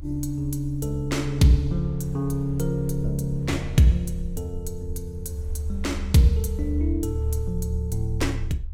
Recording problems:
low-frequency rumble; below 72 Hz, strongest tone 28 Hz, SNR 12 dB
wind noise; below 770 Hz, SNR 31 dB

